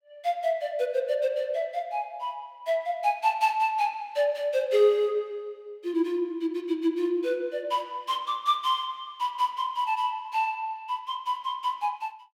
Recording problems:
none

